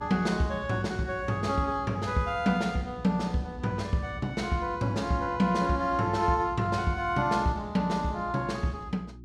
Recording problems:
hum; 60 Hz, harmonics up to 360 Hz, SNR 18 dB

